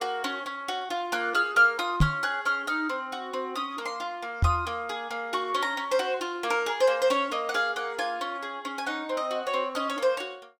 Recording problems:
knock on the microphone; at 2 s and at 4.5 s; peak +9 dB vs average level

